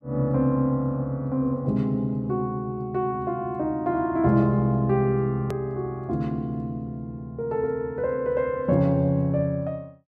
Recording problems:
edit click; at 5.5 s

